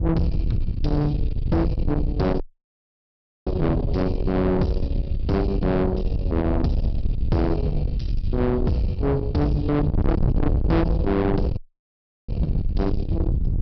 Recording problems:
low-pass filter; nothing above 5.5 kHz
distortion; soft clipping, signal-to-distortion ratio 6 dB
wind on the microphone; below 160 Hz, SNR 2 dB
audio cutting out; at 2.5 s for 1 s and at 12 s for 0.5 s

